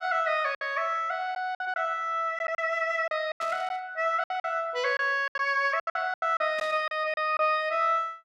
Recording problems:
lost packets; 10% of the sound replaced, filled with silence
burst of static; at 3.5 s and at 6.5 s; peak -11 dB vs average level

